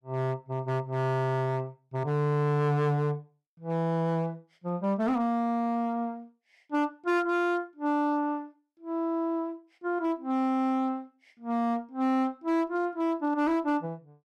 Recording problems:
distortion; hard clipping, uneven, signal-to-distortion ratio 10 dB

